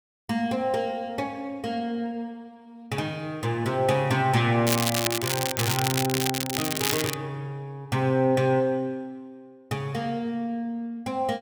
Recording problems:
crackling; from 4.5 to 7 s; loose cable, SNR 0 dB

